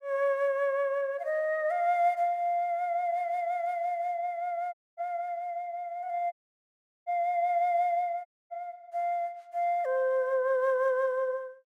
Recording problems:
dropout; at 4.5 s, at 6.5 s for 0.5 s and at 8.5 s

